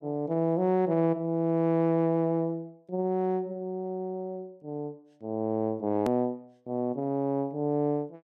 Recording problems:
edit click; at 6 s

